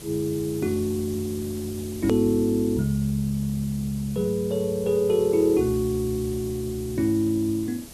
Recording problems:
background hiss; SNR 16 dB
edit click; at 2 s

